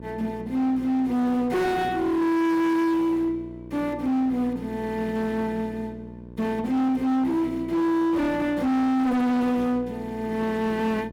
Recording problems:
distorted audio; hard clipping, signal-to-distortion ratio 7 dB
mains hum; 60 Hz, harmonics up to 1.1 kHz, SNR 18 dB

